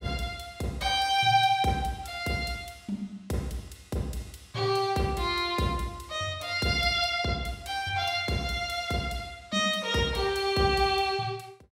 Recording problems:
none

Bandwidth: 16 kHz